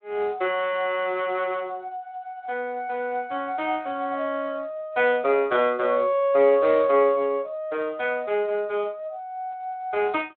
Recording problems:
telephone audio; 260 Hz to 3.7 kHz, Speex

